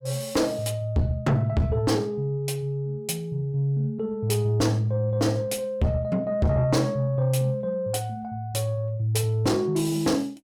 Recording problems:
distorted audio; soft clipping, signal-to-distortion ratio 6 dB

